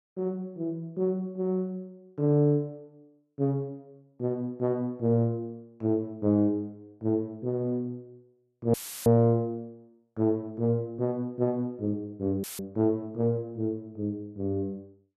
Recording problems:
audio cutting out; at 8.5 s and at 12 s; filled with static

